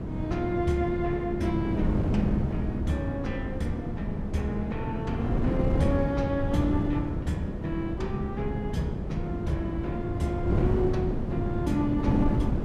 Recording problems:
wind on the microphone; below 270 Hz, SNR 1 dB

